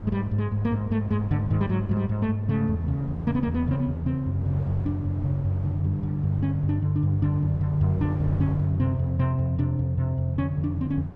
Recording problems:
wind on the microphone; below 280 Hz, SNR 15 dB

